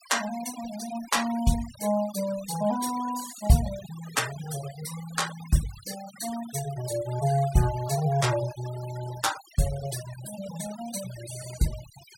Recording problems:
denoising artefacts; signal-to-artefact ratio 13 dB

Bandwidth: 17.5 kHz